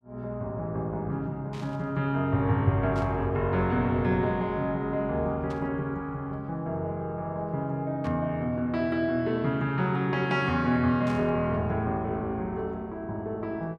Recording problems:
static burst; 5 times, first at 1.5 s; peak -14 dB vs average level

